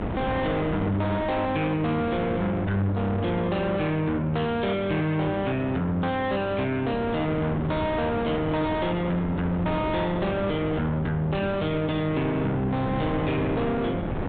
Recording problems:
treble cut off; nothing above 4 kHz
distortion; soft clipping, signal-to-distortion ratio 7 dB
hum; 50 Hz, harmonics up to 1.1 kHz, SNR 13 dB
wind on the microphone; below 670 Hz, SNR 8 dB

